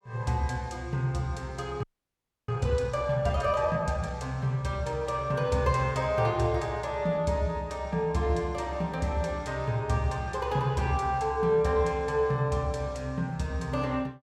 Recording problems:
audio freezing; at 2 s for 0.5 s

